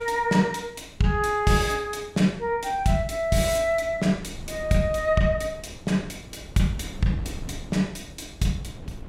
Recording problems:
wind on the microphone; below 230 Hz, SNR 18 dB

